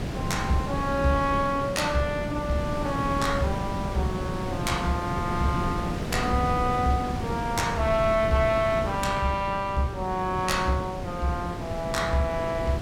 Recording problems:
wind noise; below 400 Hz, SNR 5 dB

